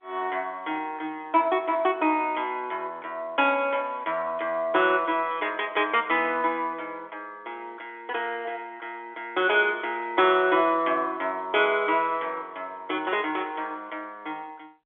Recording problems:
telephone audio; 280 Hz to 3.6 kHz, G.711

